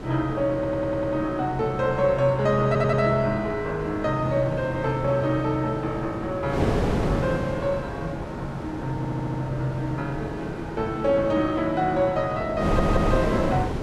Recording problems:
wind noise; below 530 Hz, SNR 6 dB
audio stuttering; 4 times, first at 0.5 s

